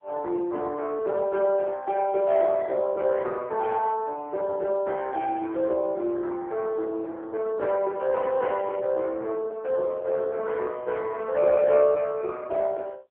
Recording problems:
phone line; 300 Hz to 3.6 kHz, AMR-NB

